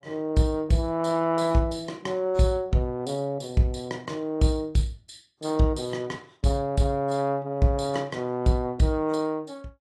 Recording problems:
lossy codec; AAC, log-spectral distance 2 dB, nothing above 11.6 kHz

